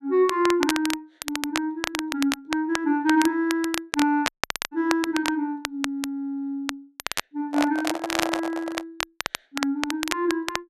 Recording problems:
crackling; vinyl, SNR 5 dB
dropout; at 4.5 s
microphone handling noise; from 7.5 to 9 s; peak +1 dB vs average level

